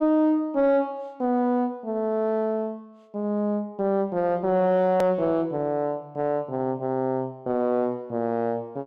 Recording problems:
distortion; soft clipping, signal-to-distortion ratio 10 dB
hard cut with a click; at 5 s

